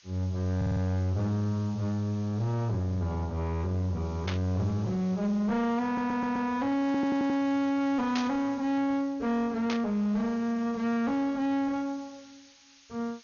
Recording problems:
codec artefacts; MP2, log-spectral distance 5 dB, nothing above 6.3 kHz
distorted audio; soft clipping, signal-to-distortion ratio 11 dB
background hiss; slope +5 dB per octave, SNR 26 dB
stutter; at 0.5 s, at 6 s and at 7 s
static burst; at 4.5 s, at 8 s and at 9.5 s; peak -1 dB vs average level

